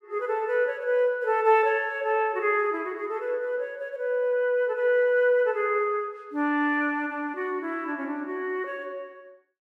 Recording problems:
none

